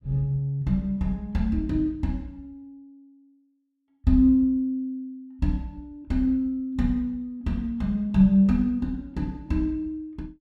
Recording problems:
none

